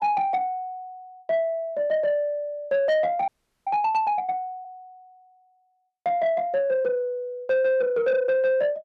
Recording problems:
distorted audio; soft clipping, signal-to-distortion ratio 11 dB
audio freezing; at 3.5 s

